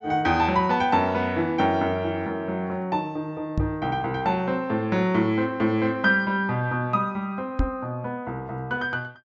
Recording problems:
treble missing; nothing above 8 kHz
microphone bump; at 3.5 s and at 7.5 s; peak +4 dB vs average level

